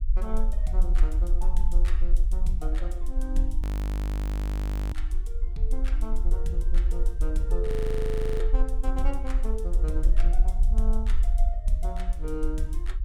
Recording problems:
low-frequency rumble; below 44 Hz, SNR -8 dB
frozen audio; at 3.5 s for 1.5 s and at 7.5 s for 0.5 s

